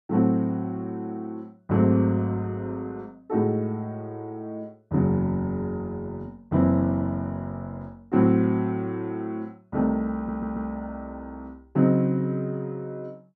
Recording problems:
stutter; at 10 s

